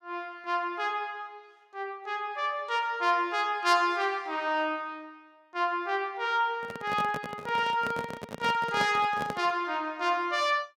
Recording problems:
handling noise; from 6.5 to 9.5 s; peak -2 dB vs average level

